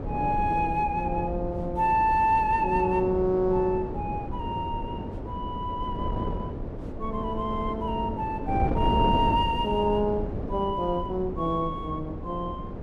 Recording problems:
wind on the microphone; below 370 Hz, SNR 6 dB

